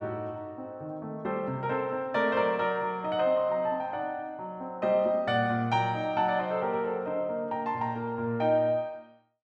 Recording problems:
none

